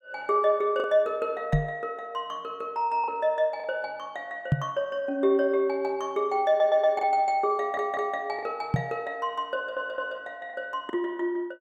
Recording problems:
lost packets; 3% of the sound replaced, filled with the last packet
microphone bump; at 1.5 s, at 4.5 s and at 8.5 s; peak +8 dB vs average level
audio stuttering; at 6.5 s, at 7.5 s and at 9.5 s

